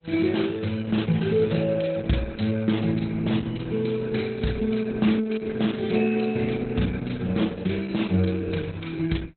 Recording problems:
lossy compression; Opus, log-spectral distance 7 dB, nothing above 4.1 kHz

